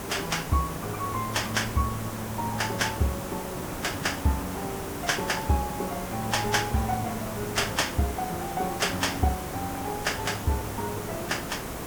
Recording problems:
hiss; slope -6 dB per octave, SNR 5 dB

